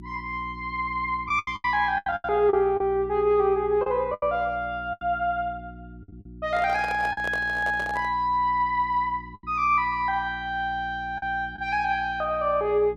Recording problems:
electrical hum; 60 Hz, harmonics up to 360 Hz, SNR 18 dB
lost packets; 6% of the sound replaced, filled with the last packet
microphone handling noise; from 6.5 to 8 s; peak -7 dB vs average level

